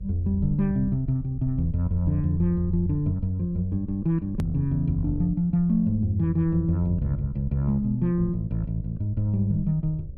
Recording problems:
hum; 50 Hz, harmonics up to 600 Hz, SNR 31 dB
low-frequency rumble; below 80 Hz, SNR 14 dB
click at an edit; at 4.5 s

